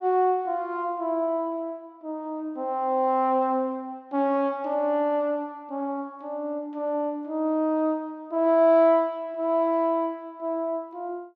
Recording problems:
none

